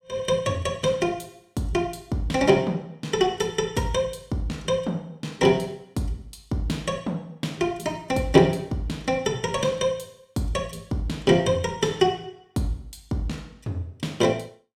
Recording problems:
none

